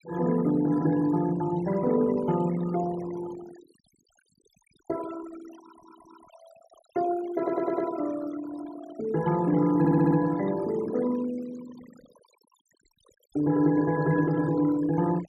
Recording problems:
noise reduction artefacts; signal-to-artefact ratio 18 dB
audio stuttering; at 5.5 s, at 7.5 s and at 10 s

